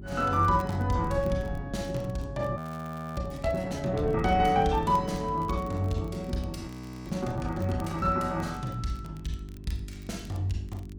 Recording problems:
hum; 50 Hz, harmonics up to 400 Hz, SNR 14 dB
wind on the microphone; below 180 Hz, SNR 13 dB
crackling; vinyl, SNR 27 dB
audio freezing; at 2.5 s for 0.5 s and at 6.5 s

